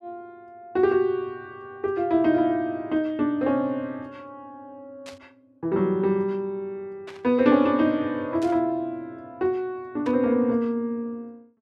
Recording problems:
static burst; 4 times, first at 5 s; peak -13 dB vs average level

